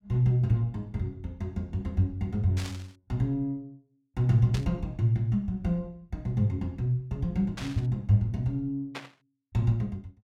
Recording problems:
static burst; 4 times, first at 2.5 s; peak -5 dB vs average level

